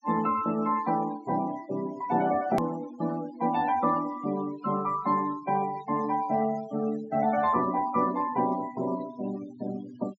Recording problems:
treble cut off; nothing above 8 kHz
denoising artefacts; signal-to-artefact ratio 17 dB
edit click; at 2.5 s

